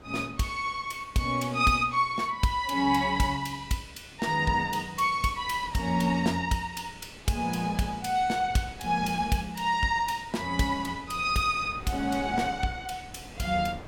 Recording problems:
wind noise; below 590 Hz, SNR 19 dB

